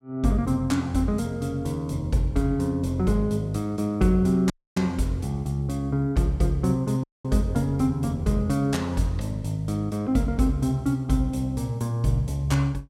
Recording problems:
dropout; at 4.5 s and at 7 s

